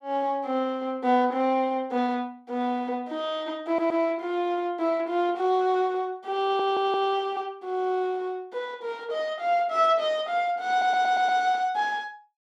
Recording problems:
audio stuttering; at 3.5 s, at 6.5 s and at 11 s

